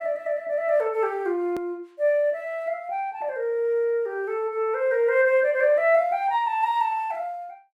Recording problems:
hard cut with a click; at 1.5 s

